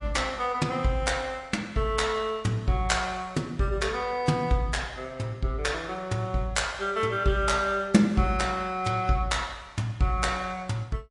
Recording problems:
codec artefacts; MP3, log-spectral distance 2 dB, nothing above 11 kHz

